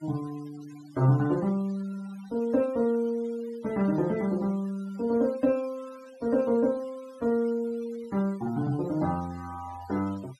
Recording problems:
noise reduction artefacts; signal-to-artefact ratio 23 dB

